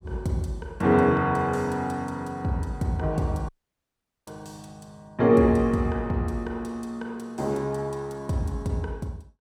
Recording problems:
dropout; at 3.5 s for 1 s

